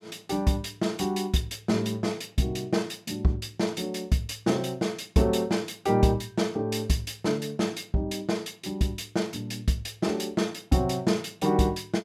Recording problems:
none

